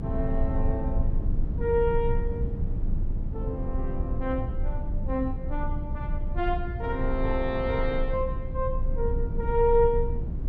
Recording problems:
low-frequency rumble; below 76 Hz, strongest tone 26 Hz, SNR 2 dB

